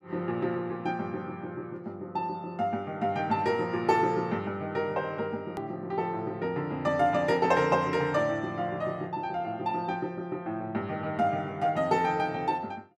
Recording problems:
edit click; at 5.5 s

